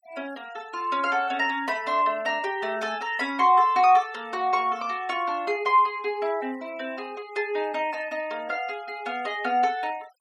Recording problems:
noise reduction artefacts; signal-to-artefact ratio 24 dB

